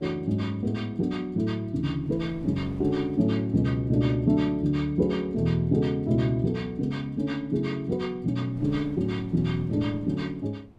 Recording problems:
wind on the microphone; below 340 Hz, SNR 23 dB

